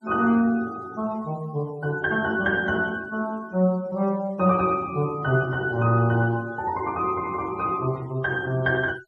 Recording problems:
noise reduction artefacts; signal-to-artefact ratio 24 dB

